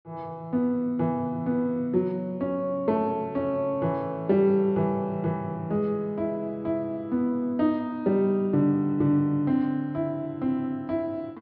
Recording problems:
treble cut off; nothing above 5.5 kHz

